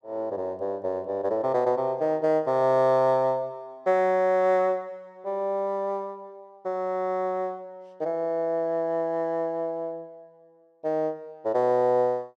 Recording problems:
none

